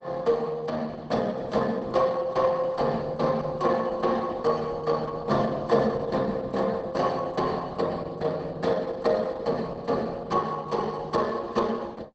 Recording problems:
codec artefacts; Opus, log-spectral distance 3 dB, nothing above 8 kHz

